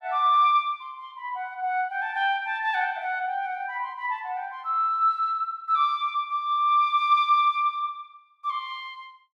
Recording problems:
none

